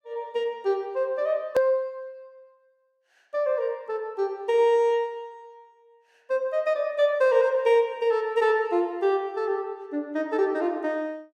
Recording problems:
hard cut with a click; at 1.5 s

